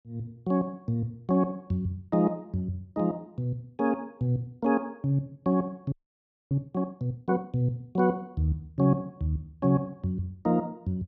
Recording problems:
frozen audio; at 6 s for 0.5 s

